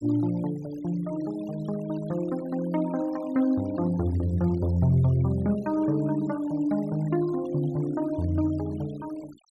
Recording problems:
denoising artefacts; signal-to-artefact ratio 23 dB

